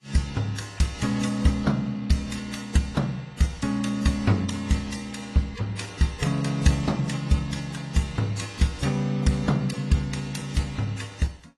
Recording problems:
lossy codec; AAC, then AAC, log-spectral distance 4 dB, nothing above 11.3 kHz

